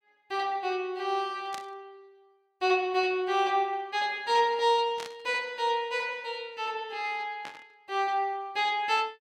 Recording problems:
burst of static; at 1.5 s, at 5 s and at 7.5 s; peak -7 dB vs average level

